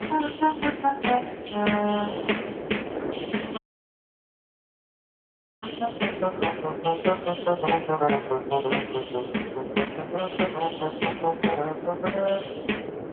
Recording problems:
phone line; 240 Hz to 3.3 kHz, AMR-NB
wind on the microphone; below 610 Hz, SNR 8 dB
audio cutting out; at 3.5 s for 2 s

